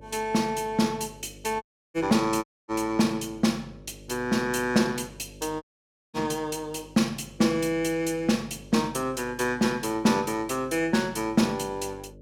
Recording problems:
mains hum; 50 Hz, harmonics up to 600 Hz, SNR 22 dB
audio cutting out; at 1.5 s, at 2.5 s and at 5.5 s for 0.5 s

